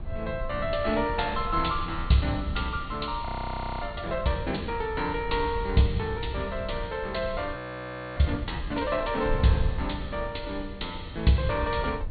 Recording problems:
treble missing; nothing above 4.5 kHz
wind noise; below 92 Hz, SNR 9 dB
audio freezing; at 3.5 s for 0.5 s and at 7.5 s for 0.5 s

